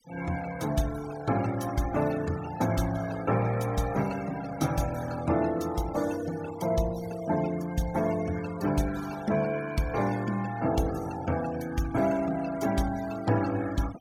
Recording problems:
denoising artefacts; signal-to-artefact ratio 16 dB

